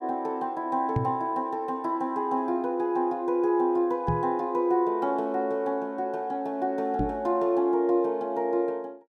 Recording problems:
knock on the microphone; at 1 s, at 4 s and at 7 s; peak +3 dB vs average level

